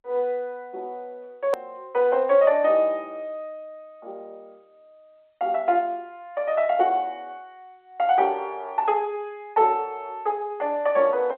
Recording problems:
telephone audio; 320 Hz to 3.6 kHz, G.711
edit click; at 1.5 s

